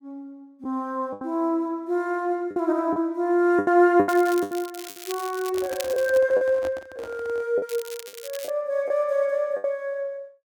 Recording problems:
lost packets; 8% of the sound replaced, filled with the last packet
crackle; from 4 to 6 s and at 7.5 s; loose cable, SNR 15 dB
microphone handling noise; from 5.5 to 7.5 s; peak -8 dB vs average level

